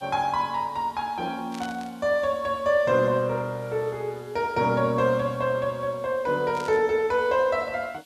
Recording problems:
background hiss; SNR 28 dB
static burst; at 1.5 s and at 6.5 s; peak -11 dB vs average level

